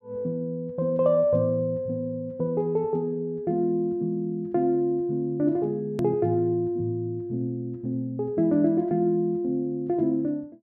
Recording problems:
click at an edit; at 6 s

